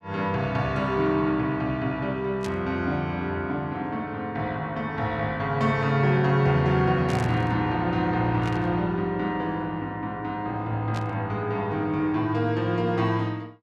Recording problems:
burst of static; 4 times, first at 2.5 s; peak -9 dB vs average level

